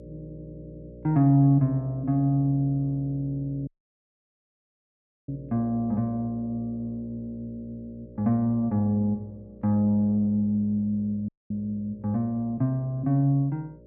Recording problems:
hum; 60 Hz, harmonics up to 600 Hz, SNR 21 dB
audio cutting out; at 3.5 s for 1.5 s and at 11 s

